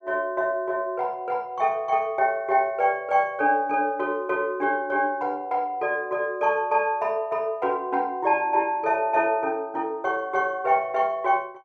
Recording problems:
none

